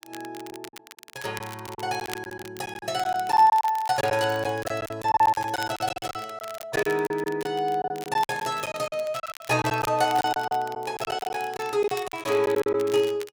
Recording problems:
crackling; vinyl, SNR 17 dB
packet loss; 14% of the sound replaced, filled with silence

